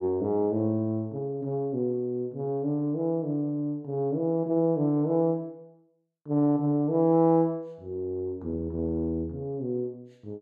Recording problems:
none

